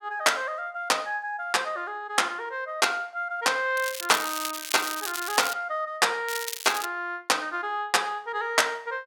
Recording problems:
crackle; from 4 to 5.5 s and at 6.5 s; loose cable, SNR 7 dB

